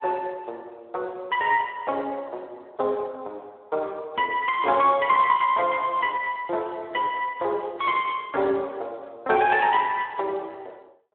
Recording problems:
phone line; 320 Hz to 3.5 kHz, Speex

